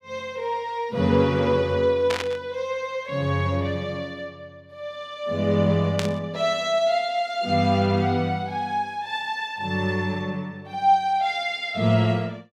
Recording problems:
static burst; at 2 s and at 6 s; peak 0 dB vs average level

